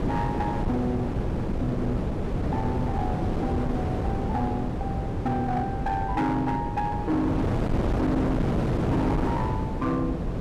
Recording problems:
distortion; hard clipping, signal-to-distortion ratio 10 dB
hum; 50 Hz, harmonics up to 400 Hz, SNR 15 dB
wind on the microphone; below 390 Hz, SNR -1 dB

